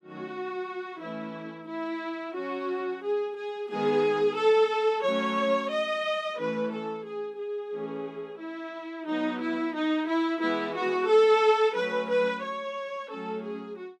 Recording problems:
none

